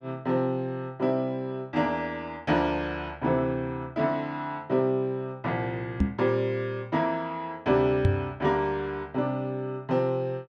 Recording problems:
microphone thump; at 6 s and at 8 s; peak +9 dB vs average level

